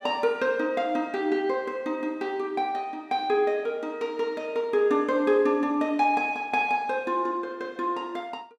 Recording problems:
none

